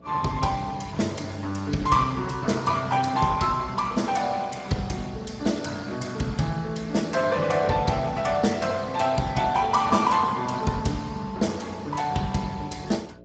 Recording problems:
codec artefacts; Speex, log-spectral distance 5 dB, nothing above 7.6 kHz
hum; 60 Hz, harmonics up to 660 Hz, SNR 24 dB

